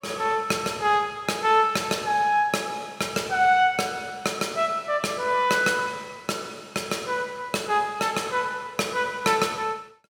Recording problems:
none

